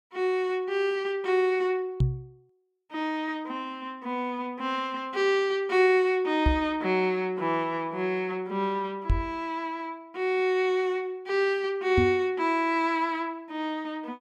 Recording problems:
microphone thump; 4 times, first at 2 s; peak +6 dB vs average level

